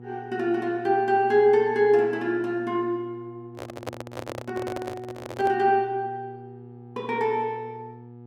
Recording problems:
hum; 60 Hz, harmonics up to 840 Hz, SNR 20 dB
handling noise; from 3.5 to 5.5 s; peak -5 dB vs average level

